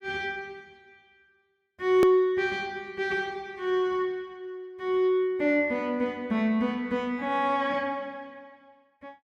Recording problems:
click at an edit; at 2 s

